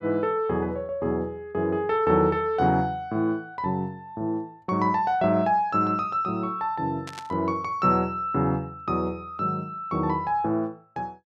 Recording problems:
burst of static; at 7 s; peak -9 dB vs average level

